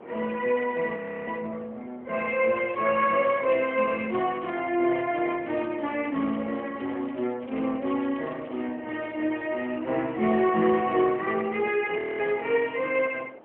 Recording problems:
telephone audio; 220 Hz to 3.3 kHz, AMR-NB
wind on the microphone; below 820 Hz, SNR 22 dB
audio freezing; at 1 s and at 12 s
crackle; from 3 to 9 s; loose cable, SNR 26 dB

